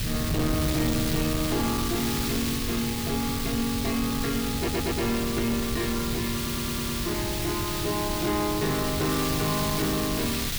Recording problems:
distorted audio; soft clipping, signal-to-distortion ratio 12 dB
background hiss; SNR 2 dB
wind noise; below 190 Hz, SNR 5 dB
stutter; at 4.5 s and at 6.5 s

